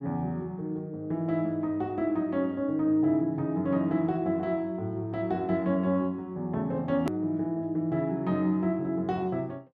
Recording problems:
edit click; at 7 s

